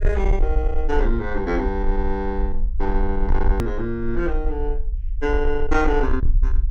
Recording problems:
distorted audio; soft clipping, signal-to-distortion ratio 12 dB
low-frequency rumble; below 48 Hz, strongest tone 18 Hz, SNR 1 dB
click at an edit; at 3.5 s

